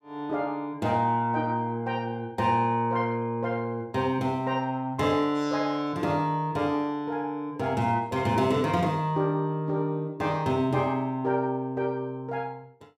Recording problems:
none

